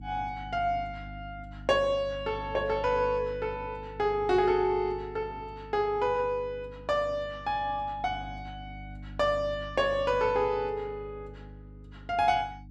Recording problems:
electrical hum; 50 Hz, harmonics up to 300 Hz, SNR 16 dB

